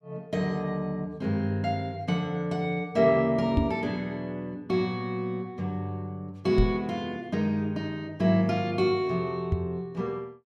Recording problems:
microphone thump; at 3.5 s, at 6.5 s and at 9.5 s; peak +7 dB vs average level

